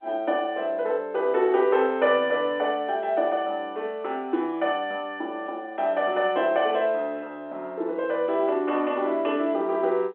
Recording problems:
phone line; 260 Hz to 3.6 kHz, G.711

